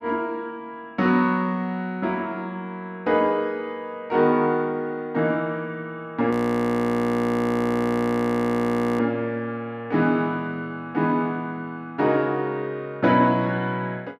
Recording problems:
audio freezing; at 6.5 s for 2.5 s

